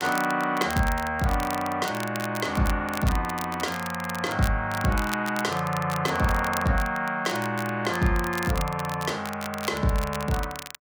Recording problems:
crackling; vinyl, SNR 12 dB

